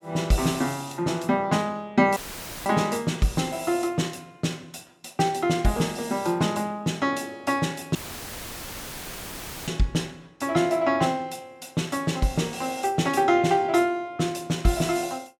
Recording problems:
dropout; at 2 s and at 8 s for 1.5 s; filled with static

